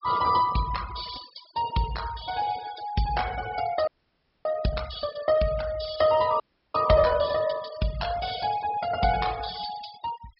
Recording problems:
treble cut off; nothing above 5.5 kHz
noise reduction artefacts; signal-to-artefact ratio 15 dB
frozen audio; at 4 s for 0.5 s and at 6.5 s

